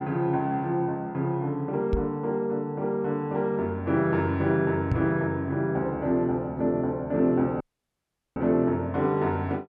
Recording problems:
microphone bump; at 2 s and at 5 s; peak +3 dB vs average level
dropout; at 7.5 s for 0.5 s

